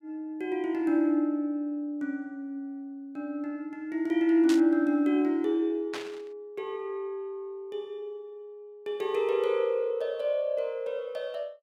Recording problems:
static burst; at 4.5 s and at 6 s; peak -3 dB vs average level

